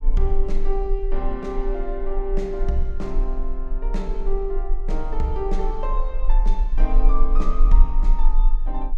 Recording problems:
low-frequency rumble; below 32 Hz, strongest tone 18 Hz, SNR -4 dB

